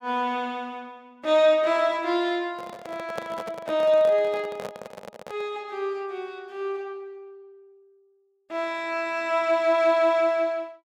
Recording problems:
microphone handling noise; from 2.5 to 5.5 s; peak -5 dB vs average level

